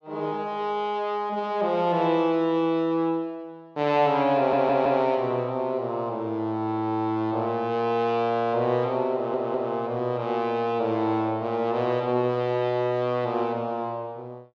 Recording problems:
audio stuttering; at 4.5 s and at 9 s

